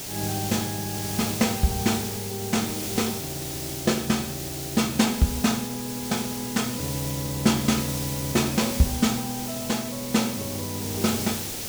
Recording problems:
background hiss; SNR 5 dB

